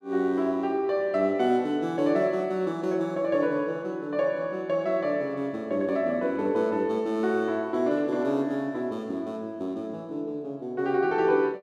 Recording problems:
none

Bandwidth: 13.5 kHz